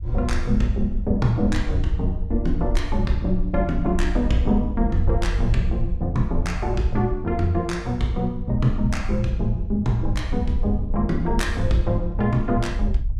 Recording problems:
rumble; below 62 Hz, SNR 4 dB

